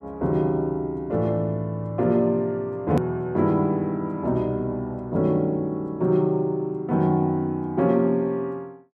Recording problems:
click at an edit; at 3 s

